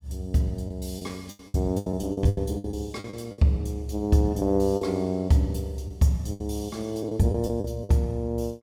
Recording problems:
lost packets; 10% of the sound replaced, filled with the last packet

